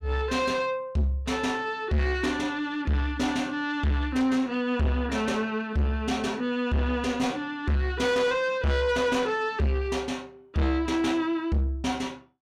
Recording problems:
distortion; soft clipping, signal-to-distortion ratio 7 dB

